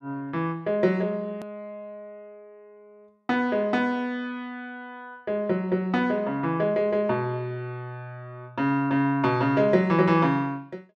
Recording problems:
edit click; at 1.5 s

